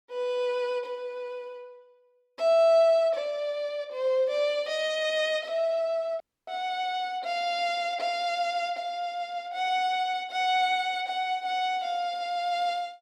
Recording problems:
dropout; at 6 s

